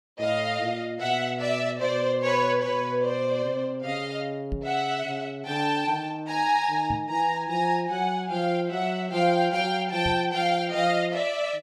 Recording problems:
microphone thump; at 4.5 s, at 7 s and at 10 s; peak -2 dB vs average level

